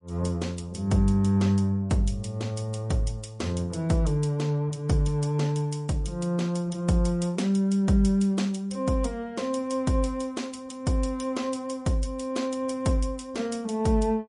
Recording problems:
lossy compression; MP3, log-spectral distance 2 dB, nothing above 10.1 kHz

